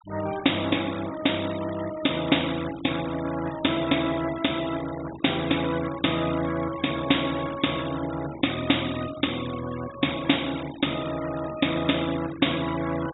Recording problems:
low-pass filter; nothing above 4 kHz
denoising artefacts; signal-to-artefact ratio 14 dB

